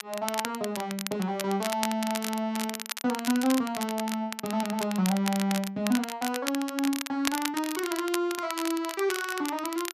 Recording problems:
crackling; vinyl, SNR 6 dB

